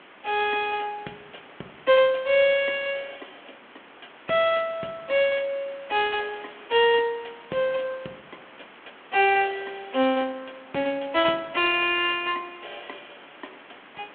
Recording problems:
phone line; 220 Hz to 3.6 kHz, G.726
background hiss; SNR 23 dB

